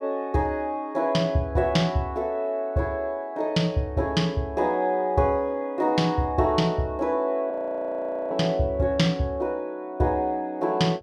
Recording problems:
audio freezing; at 7.5 s for 1 s

